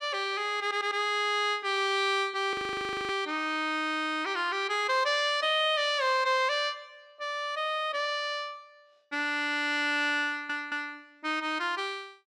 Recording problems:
stutter; at 0.5 s and at 10 s
audio freezing; at 2.5 s for 0.5 s

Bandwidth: 14 kHz